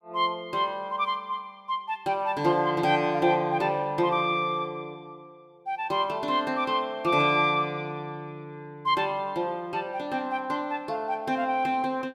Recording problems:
none

